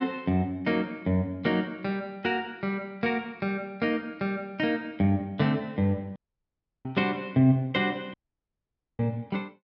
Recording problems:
audio cutting out; at 6 s for 0.5 s and at 8 s for 1 s

